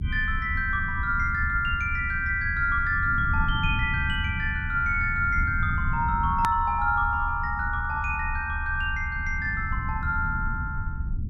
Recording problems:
rumble; below 110 Hz, SNR 6 dB
click at an edit; at 6.5 s

